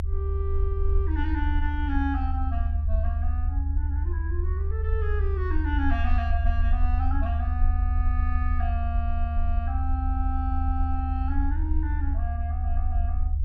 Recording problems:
low-frequency rumble; below 76 Hz, SNR -8 dB

